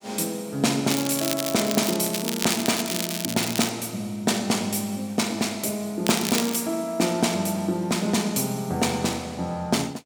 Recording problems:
crackling; from 1 to 3.5 s and at 6 s; loose cable, SNR 4 dB

